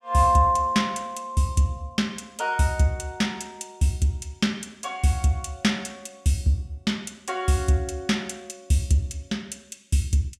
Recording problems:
none

